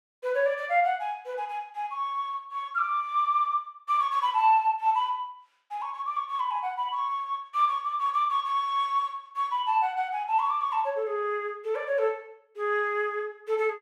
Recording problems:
none

